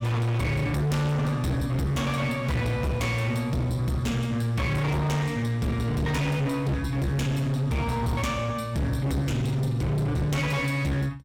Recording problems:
distortion; hard clipping, signal-to-distortion ratio 7 dB

